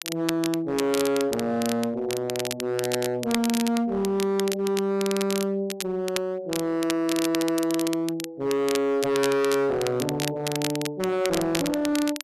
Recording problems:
distorted audio; hard clipping, uneven, signal-to-distortion ratio 6 dB
crackle; vinyl, SNR 8 dB

